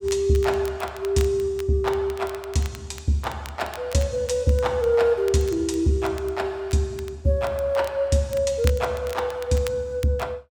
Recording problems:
crackling; vinyl, SNR 20 dB

